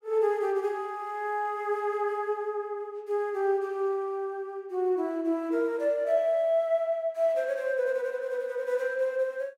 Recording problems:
none

